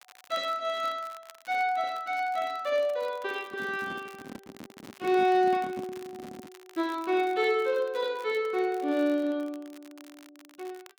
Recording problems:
crackle; vinyl, SNR 25 dB
handling noise; from 3.5 to 6.5 s; peak -7 dB vs average level

